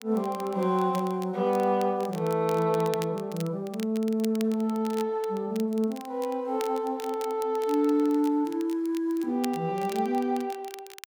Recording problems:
crackle; vinyl, SNR 19 dB

